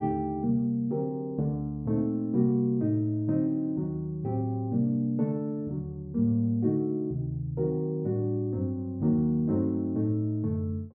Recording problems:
none

